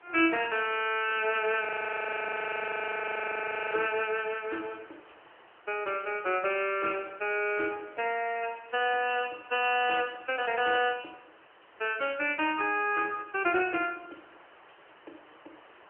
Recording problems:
telephone audio; 280 Hz to 3.1 kHz, AMR-NB
background hiss; SNR 25 dB
audio freezing; at 1.5 s for 2 s

